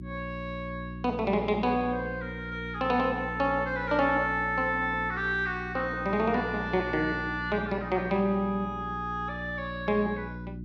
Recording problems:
electrical hum; 60 Hz, harmonics up to 360 Hz, SNR 11 dB

